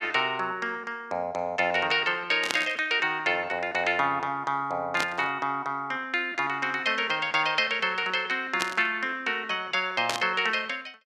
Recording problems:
static burst; 4 times, first at 2.5 s; peak +3 dB vs average level

